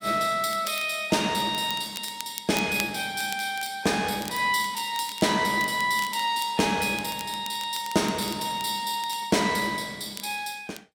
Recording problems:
crackling; vinyl, SNR 15 dB

